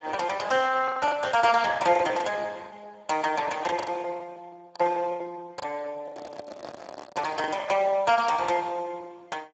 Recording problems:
codec artefacts; Speex, log-spectral distance 5 dB, nothing above 7.6 kHz
lost packets; 12% of the sound replaced, filled with the last packet
microphone handling noise; from 6 to 7.5 s; peak -9 dB vs average level

